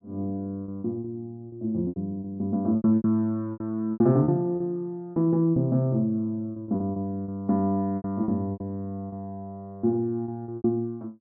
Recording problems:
lost packets; 12% of the sound replaced, filled with repeated pitch periods

